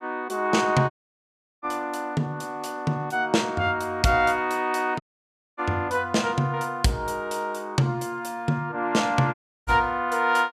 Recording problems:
audio cutting out; at 1 s for 0.5 s, at 5 s for 0.5 s and at 9.5 s

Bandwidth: 15 kHz